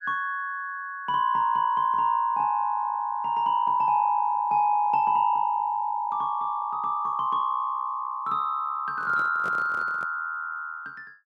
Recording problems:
microphone handling noise; from 9 to 10 s; peak -11 dB vs average level

